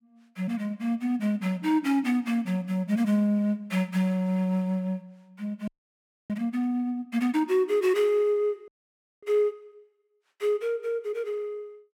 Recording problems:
audio freezing; at 5.5 s for 0.5 s and at 8.5 s for 0.5 s

